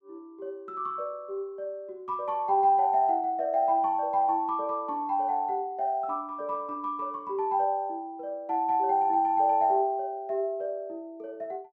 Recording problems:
none

